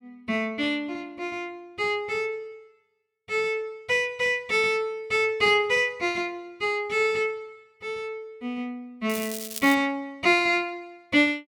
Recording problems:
crackle; at 9 s; loose cable, SNR 10 dB

